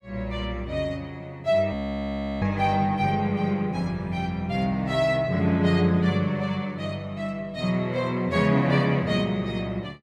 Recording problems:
audio freezing; at 1.5 s for 0.5 s

